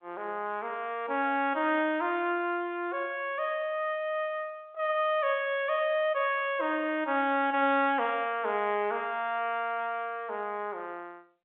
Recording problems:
telephone audio; 240 Hz to 3.7 kHz, G.711

